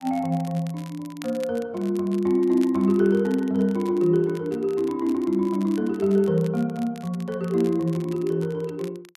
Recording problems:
crackling; vinyl, SNR 24 dB

